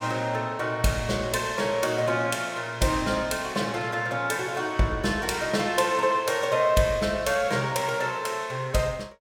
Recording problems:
none

